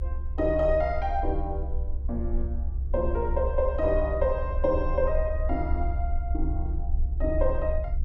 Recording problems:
rumble; below 66 Hz, SNR 2 dB

